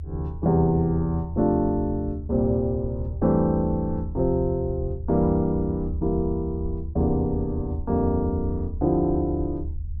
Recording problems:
rumble; below 78 Hz, strongest tone 76 Hz, SNR 8 dB

